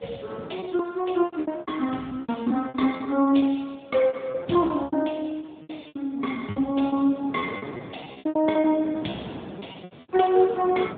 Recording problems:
telephone audio; 110 Hz to 3.6 kHz, AMR-NB
wind noise; below 630 Hz, SNR 17 dB
lost packets; 19% of the sound replaced, filled with repeated pitch periods

